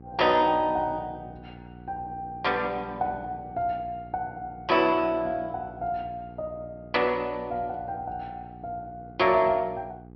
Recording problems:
low-pass filter; nothing above 5.5 kHz
hum; 60 Hz, harmonics up to 840 Hz, SNR 18 dB

